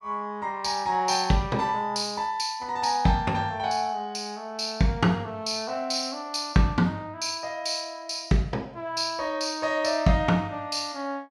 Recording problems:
none

